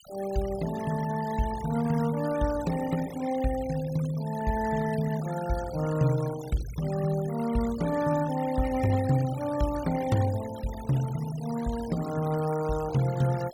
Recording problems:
denoising artefacts; signal-to-artefact ratio 16 dB

